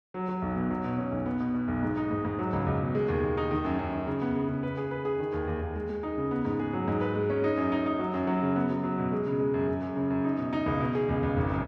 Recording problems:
none

